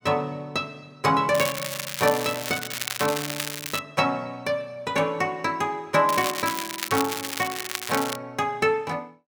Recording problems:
crackle; from 1.5 to 4 s and from 6 to 8 s; loose cable, SNR 5 dB

